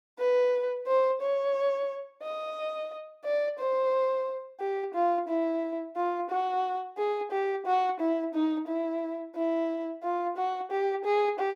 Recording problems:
none

